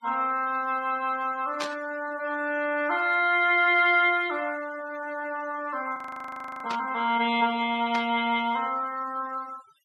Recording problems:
denoising artefacts; signal-to-artefact ratio 21 dB
burst of static; at 1.5 s, at 6.5 s and at 8 s; peak -3 dB vs average level
frozen audio; at 6 s for 0.5 s

